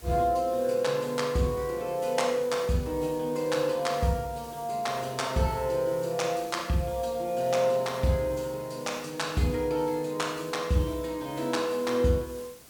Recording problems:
background hiss; slope -2 dB per octave, SNR 20 dB

